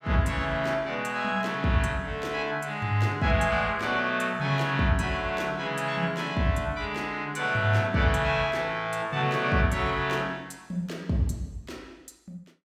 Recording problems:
none

